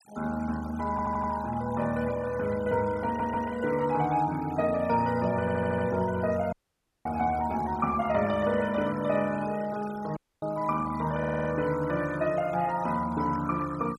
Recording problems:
noise reduction artefacts; signal-to-artefact ratio 18 dB
audio stuttering; 4 times, first at 1 s
audio cutting out; at 6.5 s for 0.5 s and at 10 s

